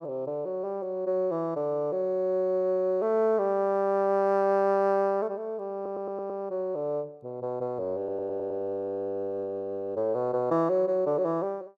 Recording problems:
stutter; at 6 s and at 8 s

